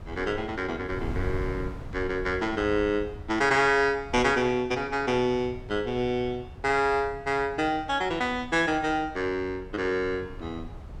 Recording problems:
wind on the microphone; below 130 Hz, SNR 15 dB

